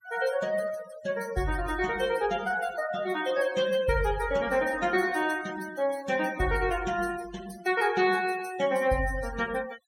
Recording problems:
noise reduction artefacts; signal-to-artefact ratio 16 dB

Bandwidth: 16 kHz